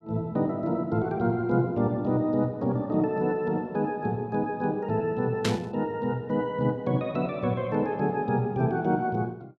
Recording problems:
static burst; at 5.5 s; peak +2 dB vs average level

